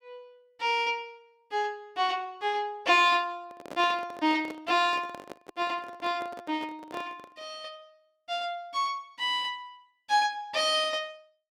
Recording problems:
handling noise; from 3.5 to 7.5 s; peak -8 dB vs average level

